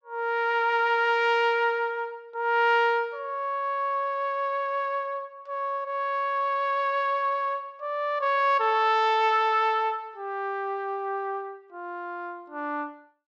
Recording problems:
treble cut off; nothing above 8 kHz

